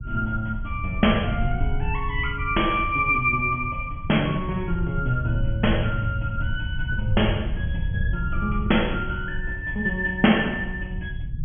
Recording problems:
treble cut off; nothing above 3.3 kHz
rumble; below 100 Hz, SNR 6 dB

